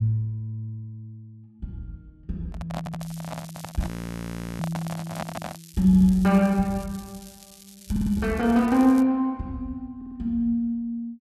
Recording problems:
microphone handling noise; from 2.5 to 5.5 s; peak -4 dB vs average level
stutter; 4 times, first at 3 s
crackle; from 3 to 9 s; loose cable, SNR 22 dB
audio freezing; at 4 s for 0.5 s

